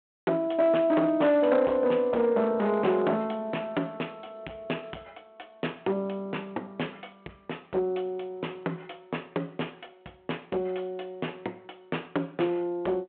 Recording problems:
phone line; 280 Hz to 3.3 kHz, G.726
distortion; hard clipping, signal-to-distortion ratio 13 dB

